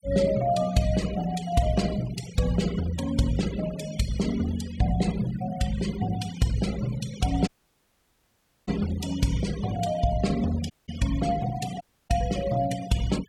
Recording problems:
noise reduction artefacts; signal-to-artefact ratio 15 dB
audio cutting out; at 7.5 s for 1 s, at 11 s and at 12 s

